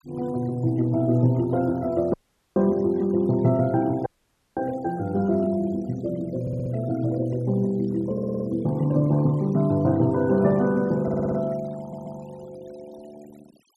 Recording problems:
noise reduction artefacts; signal-to-artefact ratio 26 dB
dropout; at 2 s and at 4 s for 0.5 s
audio stuttering; 4 times, first at 6.5 s

